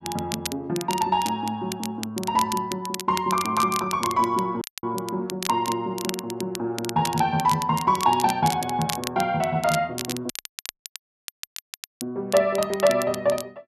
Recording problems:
crackling; vinyl, SNR 10 dB
dropout; at 4.5 s and at 10 s for 1.5 s

